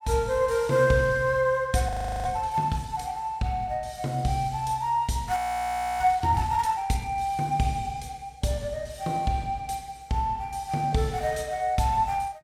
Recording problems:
audio freezing; at 2 s and at 5.5 s for 0.5 s

